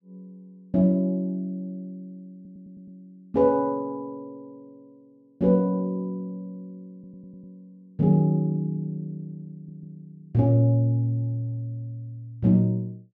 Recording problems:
stutter; at 2.5 s, at 7 s and at 9.5 s

